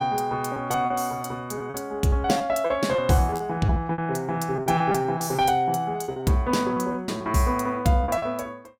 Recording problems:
lost packets; 12% of the sound replaced, filled with repeated pitch periods

